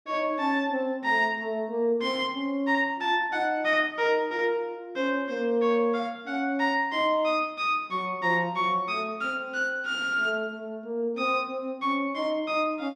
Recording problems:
none

